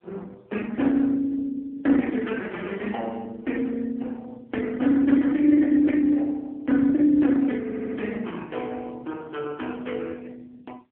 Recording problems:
phone line; 260 Hz to 3.4 kHz, AMR-NB
stutter; at 7.5 s

